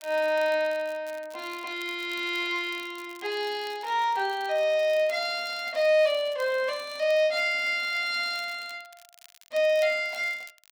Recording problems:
crackling; vinyl, SNR 24 dB

